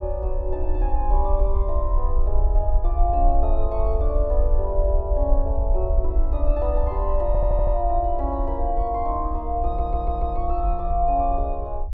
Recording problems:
rumble; below 54 Hz, SNR -1 dB
audio stuttering; at 7.5 s and at 9.5 s

